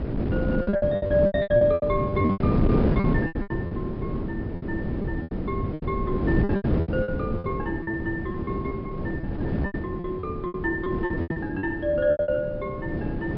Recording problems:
treble missing; nothing above 5.3 kHz
wind on the microphone; below 330 Hz, SNR 0 dB
lost packets; 18% of the sound replaced, filled with repeated pitch periods

